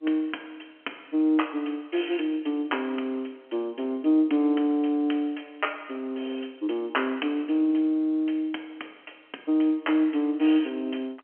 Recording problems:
telephone audio; 260 Hz to 3.2 kHz, G.711

